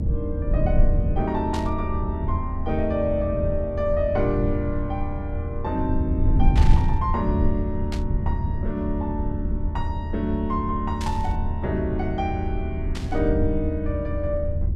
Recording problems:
low-frequency rumble; below 84 Hz, SNR -1 dB
static burst; 5 times, first at 1.5 s; peak -3 dB vs average level

